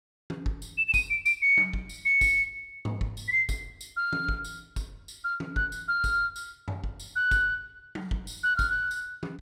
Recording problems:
none

